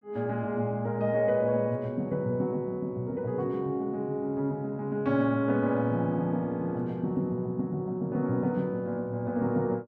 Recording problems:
none

